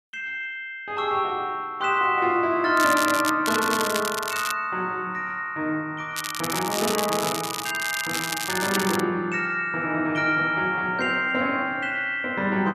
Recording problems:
crackling; at 3 s, from 3.5 to 4.5 s and from 6 to 9 s; loose cable, SNR 5 dB

